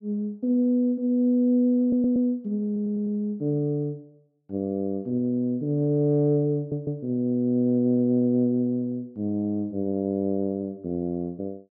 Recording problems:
stutter; 4 times, first at 2 s

